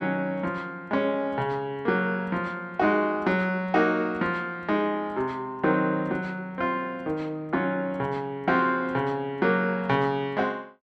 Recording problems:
none

